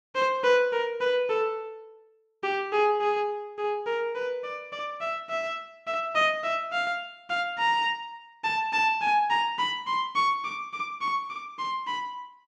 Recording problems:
none

